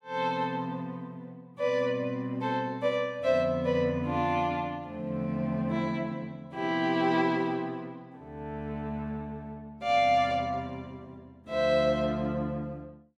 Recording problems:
none

